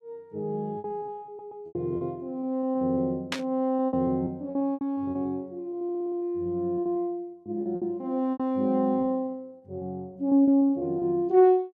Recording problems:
packet loss; 13% of the sound replaced, filled with repeated pitch periods
stutter; at 1.5 s and at 6 s
static burst; at 3.5 s; peak +2 dB vs average level

